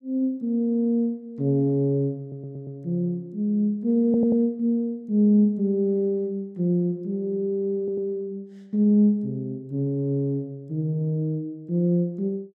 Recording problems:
audio stuttering; at 2 s, at 4 s and at 8 s

